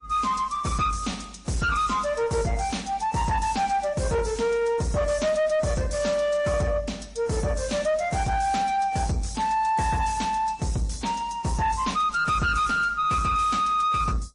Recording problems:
codec artefacts; MP3, then AAC, log-spectral distance 3 dB, nothing above 10.1 kHz
distorted audio; soft clipping, signal-to-distortion ratio 9 dB

